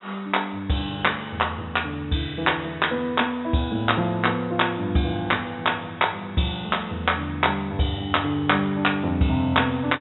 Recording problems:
treble missing; nothing above 3.8 kHz

